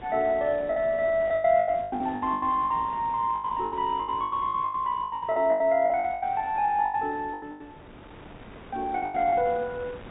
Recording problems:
treble missing; nothing above 4 kHz
wind on the microphone; below 1.2 kHz, SNR 20 dB
packet loss; 20% of the sound replaced, filled with the last packet

